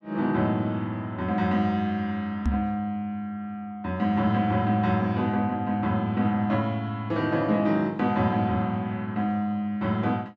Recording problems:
microphone bump; at 2.5 s; peak +3 dB vs average level

